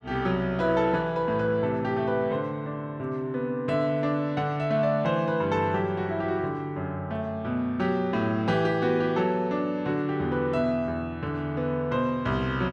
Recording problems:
none

